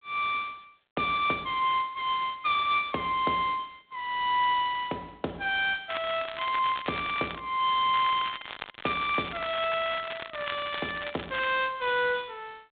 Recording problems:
telephone audio; 190 Hz to 3.9 kHz, G.726
crackling; from 6 to 7.5 s and from 8 to 12 s; loose cable, SNR 12 dB

